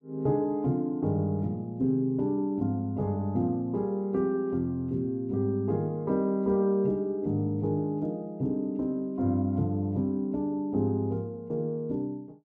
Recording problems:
none

